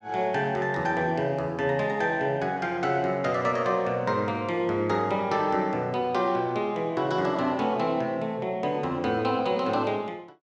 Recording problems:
none

